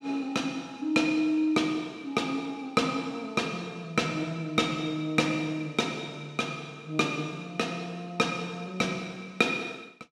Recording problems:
none

